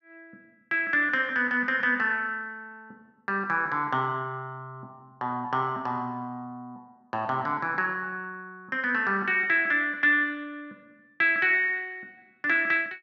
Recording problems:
none

